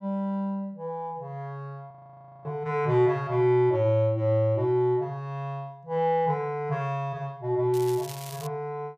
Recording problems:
frozen audio; at 2 s for 0.5 s
crackling; at 7.5 s; loose cable, SNR 16 dB

